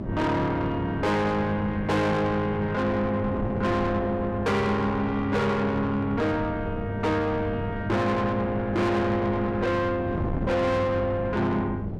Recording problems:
distorted audio; soft clipping, signal-to-distortion ratio 7 dB
hum; 50 Hz, harmonics up to 600 Hz, SNR 9 dB
wind on the microphone; below 390 Hz, SNR 8 dB

